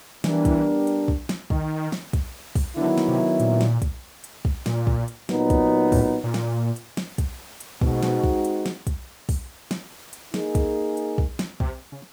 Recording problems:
background hiss; slope -2 dB per octave, SNR 20 dB

